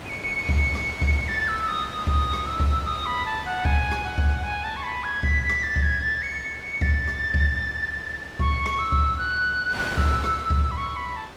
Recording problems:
codec artefacts; Opus, log-spectral distance 3 dB
wind on the microphone; below 2.3 kHz, SNR 14 dB

